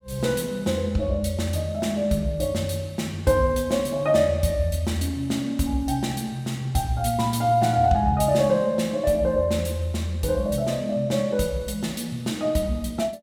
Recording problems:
none

